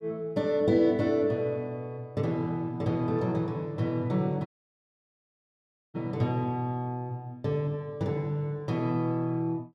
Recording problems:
dropout; at 4.5 s for 1.5 s

